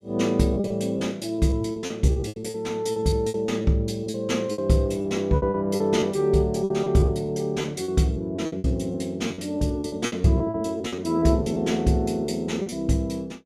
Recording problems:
lost packets; 15% of the sound replaced, filled with repeated pitch periods

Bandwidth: 15 kHz